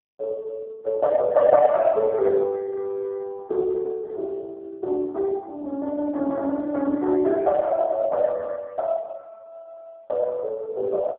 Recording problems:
phone line; 280 Hz to 2.3 kHz, AMR-NB

